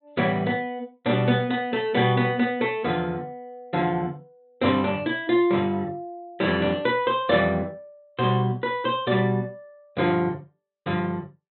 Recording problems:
low-pass filter; nothing above 4.1 kHz

